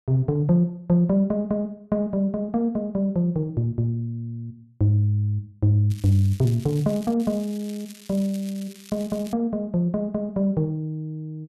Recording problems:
crackling; from 6 to 7 s and from 7 to 9.5 s; loose cable, SNR 21 dB

